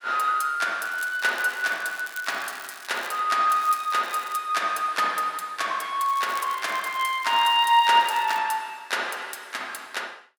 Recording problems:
crackle; from 1 to 3 s, at 3.5 s and from 6 to 8.5 s; loose cable, SNR 20 dB

